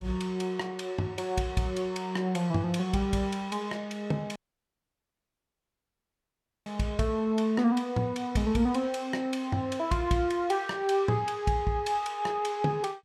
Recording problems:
dropout; at 4.5 s for 2.5 s

